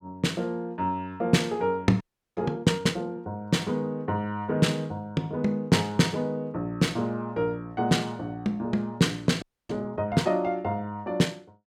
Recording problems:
frozen audio; at 2 s and at 9.5 s

